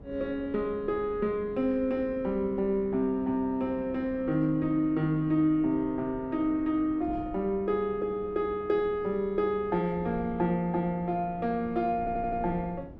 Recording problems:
wind on the microphone; below 300 Hz, SNR 19 dB
stutter; at 12 s

